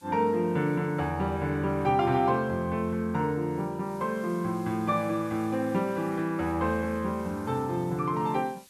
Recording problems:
background hiss; SNR 27 dB

